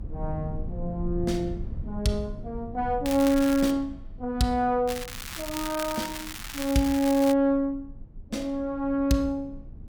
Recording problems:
low-frequency rumble; below 120 Hz, SNR 14 dB
crackle; at 3 s and from 5 to 7.5 s; loose cable, SNR 10 dB

